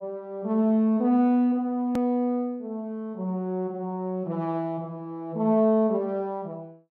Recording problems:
hard cut with a click; at 2 s

